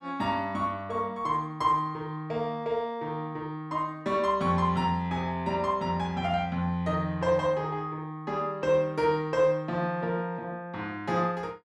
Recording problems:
none

